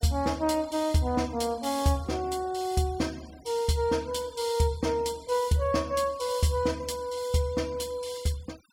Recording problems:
noise reduction artefacts; signal-to-artefact ratio 23 dB

